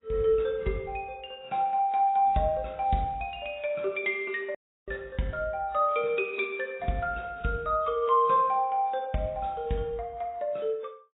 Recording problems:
lossy codec; AAC, log-spectral distance 2 dB, nothing above 3.8 kHz
dropout; at 4.5 s

